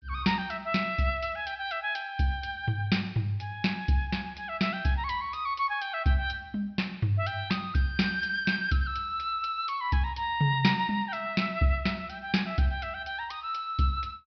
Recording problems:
low-pass filter; nothing above 5.5 kHz

